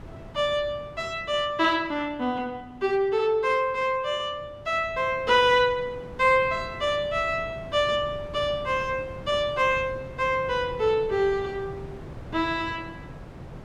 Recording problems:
wind on the microphone; below 440 Hz, SNR 17 dB

